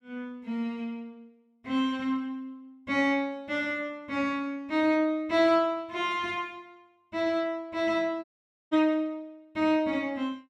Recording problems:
dropout; at 8 s

